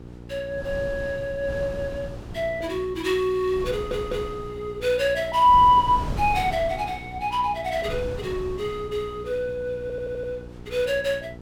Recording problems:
hum; 60 Hz, harmonics up to 960 Hz, SNR 18 dB
wind noise; below 290 Hz, SNR 14 dB
stutter; at 3.5 s and at 10 s

